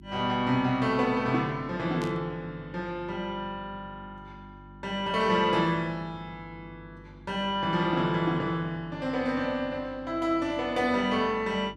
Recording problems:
hum; 50 Hz, harmonics up to 350 Hz, SNR 21 dB
static burst; at 2 s; peak -11 dB vs average level

